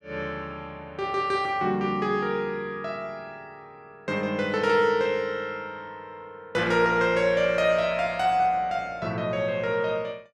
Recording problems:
none

